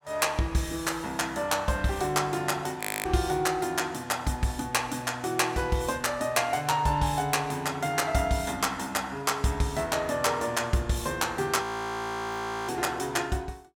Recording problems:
frozen audio; at 3 s and at 12 s for 1 s

